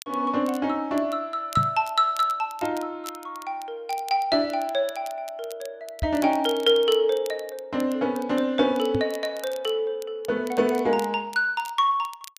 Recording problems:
crackle; vinyl, SNR 21 dB
knock on the microphone; at 1.5 s, at 6 s and at 9 s; peak +1 dB vs average level

